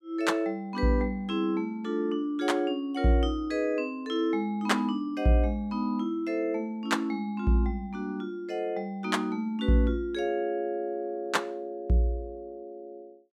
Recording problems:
none

